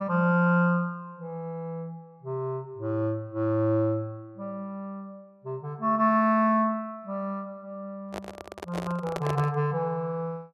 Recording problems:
handling noise; from 8 to 9.5 s; peak -2 dB vs average level

